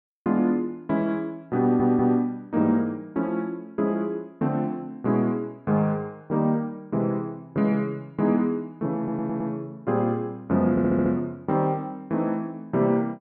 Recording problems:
audio stuttering; at 1.5 s, at 9 s and at 11 s

